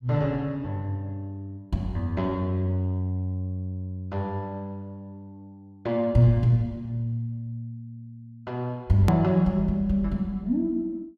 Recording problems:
click at an edit; at 9 s

